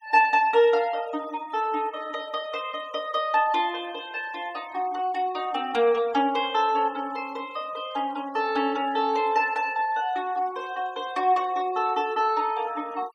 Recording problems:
denoising artefacts; signal-to-artefact ratio 23 dB

